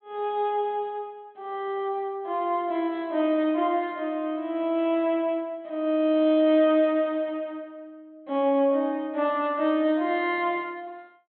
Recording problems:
low-pass filter; nothing above 4 kHz

